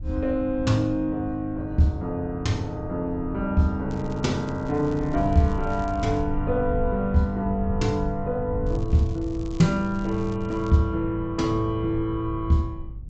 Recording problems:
treble cut off; nothing above 8 kHz
wind on the microphone; below 98 Hz, SNR 10 dB
crackling; from 4 to 6 s and from 8.5 to 11 s; loose cable, SNR 27 dB

